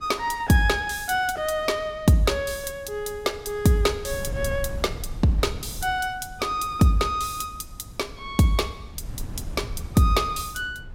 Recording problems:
wind on the microphone; below 120 Hz, SNR 15 dB

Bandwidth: 16 kHz